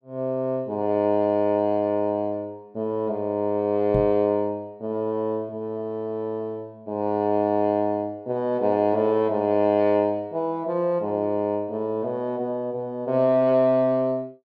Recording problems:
microphone thump; at 4 s; peak -1 dB vs average level

